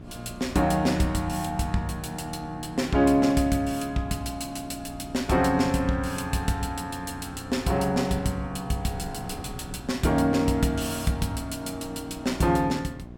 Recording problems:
hum; 60 Hz, harmonics up to 1 kHz, SNR 17 dB
wind noise; below 240 Hz, SNR 20 dB

